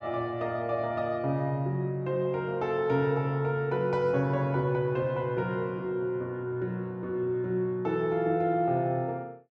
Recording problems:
none

